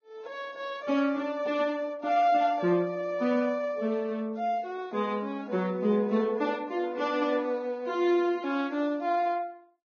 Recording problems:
lossy codec; Vorbis, log-spectral distance 2 dB, nothing above 6.3 kHz

